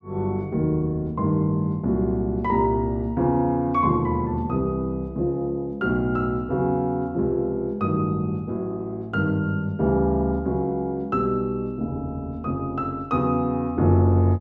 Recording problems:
none

